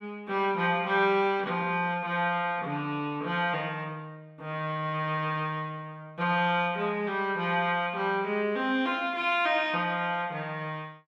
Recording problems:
none

